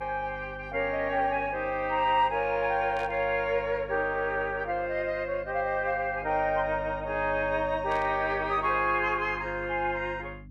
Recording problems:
electrical hum; 50 Hz, harmonics up to 300 Hz, SNR 18 dB
static burst; at 3 s and at 8 s; peak -13 dB vs average level

